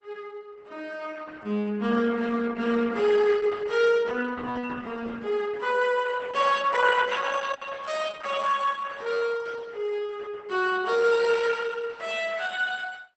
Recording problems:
lossy compression; Opus, log-spectral distance 4 dB, nothing above 8 kHz

